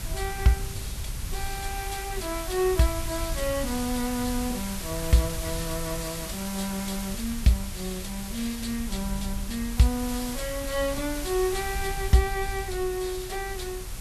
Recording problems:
codec artefacts; Vorbis, log-spectral distance 9 dB, nothing above 12.3 kHz
background hiss; slope 0 dB per octave, SNR 8 dB
low-frequency rumble; below 76 Hz, SNR 10 dB
wind on the microphone; below 170 Hz, SNR 18 dB

